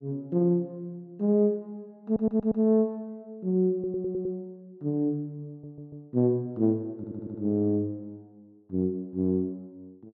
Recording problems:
stutter; 4 times, first at 2 s

